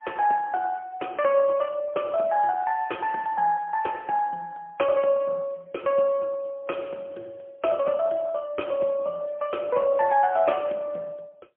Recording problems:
phone line; 280 Hz to 3.2 kHz, AMR-NB, then MP3

